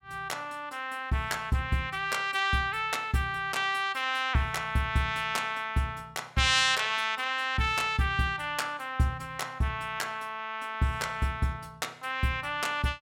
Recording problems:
none

